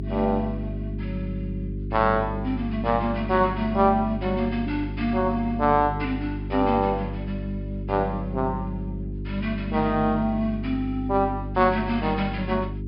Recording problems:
treble missing; nothing above 5.5 kHz
electrical hum; 50 Hz, harmonics up to 400 Hz, SNR 7 dB

